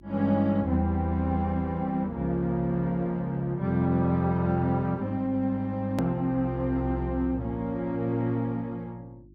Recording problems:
hum; 50 Hz, harmonics up to 350 Hz, SNR 24 dB
click at an edit; at 6 s

